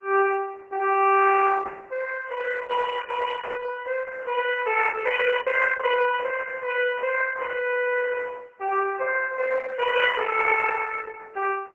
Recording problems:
codec artefacts; MP3, then Opus, log-spectral distance 5 dB, nothing above 3 kHz

